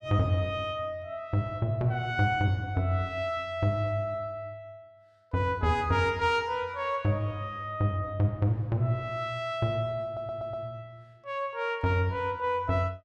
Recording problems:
stutter; at 10 s

